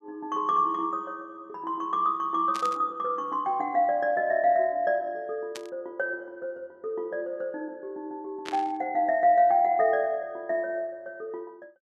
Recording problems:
static burst; at 2.5 s, at 5.5 s and at 8.5 s; peak -5 dB vs average level

